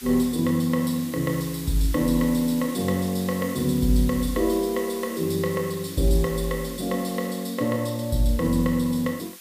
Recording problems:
hiss; slope +3 dB per octave, SNR 15 dB

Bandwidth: 15 kHz